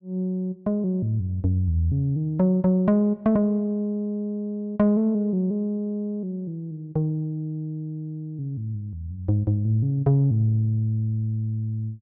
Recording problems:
none

